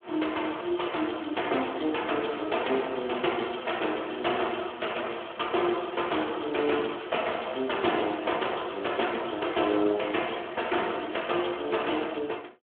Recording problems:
phone line; 260 Hz to 3.4 kHz, Speex

